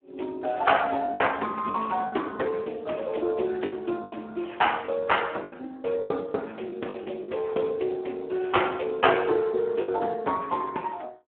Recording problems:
telephone audio; 240 Hz to 3.3 kHz, Speex
packet loss; 6% of the sound replaced, filled with the last packet

